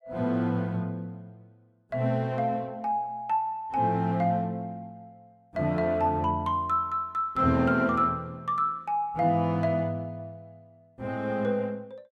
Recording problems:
none

